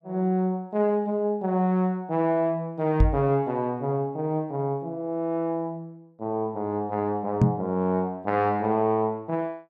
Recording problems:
microphone bump; at 3 s and at 7.5 s; peak +9 dB vs average level

